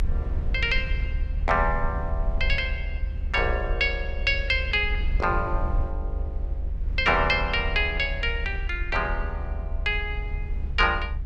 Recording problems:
rumble; below 70 Hz, SNR 5 dB

